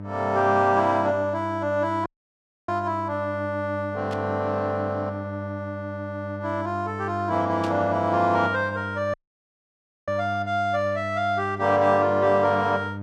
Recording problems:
hum; 50 Hz, harmonics up to 1.2 kHz, SNR 11 dB
dropout; at 2 s for 0.5 s and at 9 s for 1 s
burst of static; at 4 s and at 7.5 s; peak -10 dB vs average level

